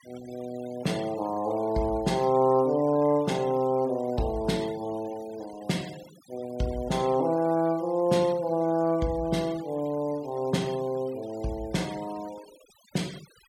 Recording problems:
noise reduction artefacts; signal-to-artefact ratio 22 dB

